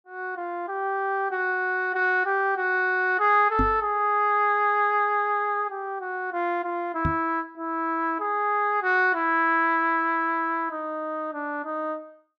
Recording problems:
microphone bump; at 3.5 s and at 7 s; peak +1 dB vs average level

